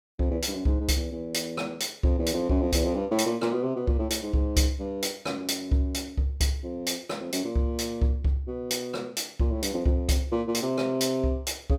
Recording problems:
none

